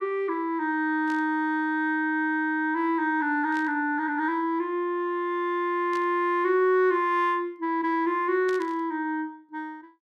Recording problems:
static burst; 4 times, first at 1 s; peak -12 dB vs average level

